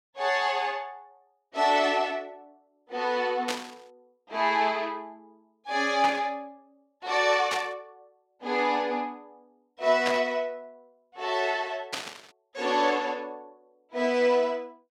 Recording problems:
static burst; 5 times, first at 3.5 s; peak +1 dB vs average level

